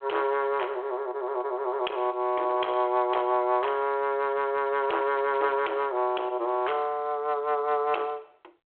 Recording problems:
phone line; 300 Hz to 3.1 kHz, G.726
distorted audio; hard clipping, uneven, signal-to-distortion ratio 11 dB

